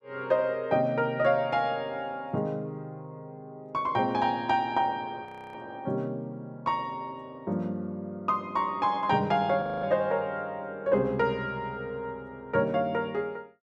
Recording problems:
frozen audio; at 5.5 s and at 9.5 s

